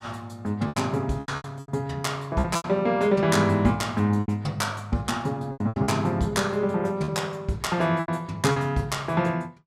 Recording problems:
packet loss; 9% of the sound replaced, filled with repeated pitch periods

